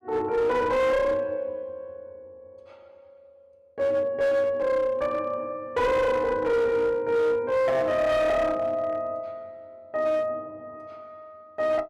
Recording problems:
distortion; hard clipping, uneven, signal-to-distortion ratio 10 dB

